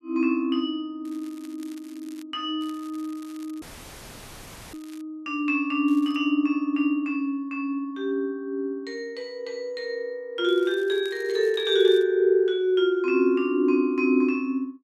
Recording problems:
crackle; 4 times, first at 1 s; loose cable, SNR 27 dB
audio cutting out; at 3.5 s for 1 s; filled with static

